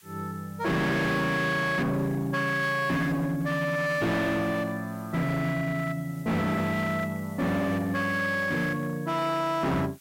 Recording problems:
distorted audio; hard clipping, signal-to-distortion ratio 8 dB
hiss; SNR 26 dB

